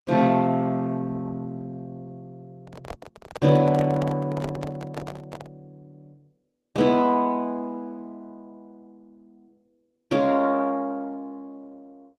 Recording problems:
lossy codec; Opus, log-spectral distance 2 dB, nothing above 12.7 kHz
handling noise; from 2.5 to 5.5 s; peak -4 dB vs average level

